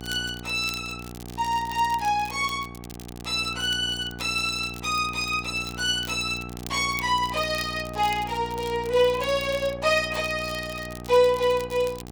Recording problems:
hum; 60 Hz, harmonics up to 1.6 kHz, SNR 14 dB
crackle; vinyl, SNR 19 dB

